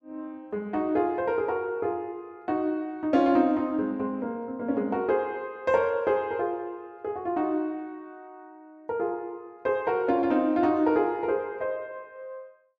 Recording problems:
none

